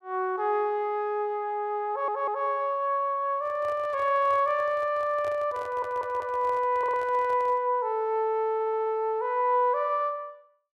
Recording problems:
stutter; 4 times, first at 2 s
microphone handling noise; from 3.5 to 7.5 s; peak -12 dB vs average level

